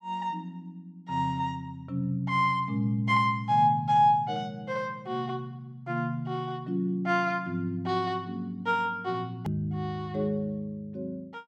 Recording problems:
edit click; at 9.5 s

